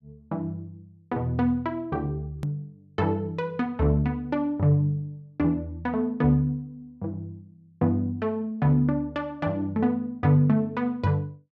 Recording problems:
click at an edit; at 2.5 s

